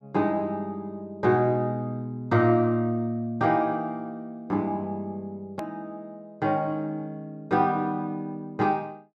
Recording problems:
click at an edit; at 5.5 s

